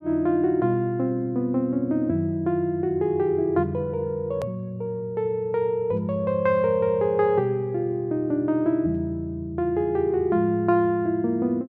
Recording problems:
edit click; at 4.5 s

